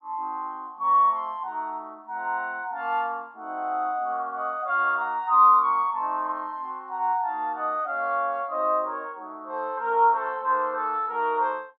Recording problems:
none

